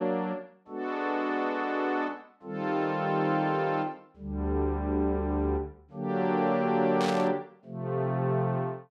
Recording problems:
burst of static; at 7 s; peak -3 dB vs average level

